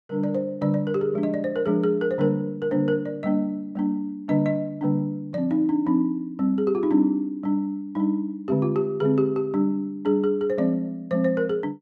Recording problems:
none

